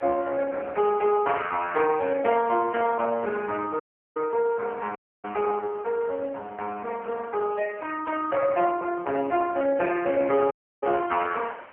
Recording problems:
telephone audio; 320 Hz to 3.1 kHz, AMR-NB
wind on the microphone; below 1.9 kHz, SNR 23 dB
dropout; at 4 s, at 5 s and at 11 s

